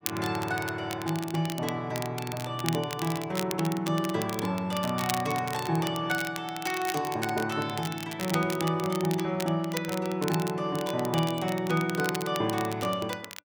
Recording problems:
crackle; vinyl, SNR 10 dB

